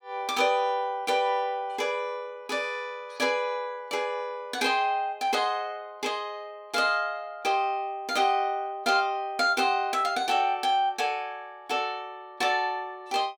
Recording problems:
none

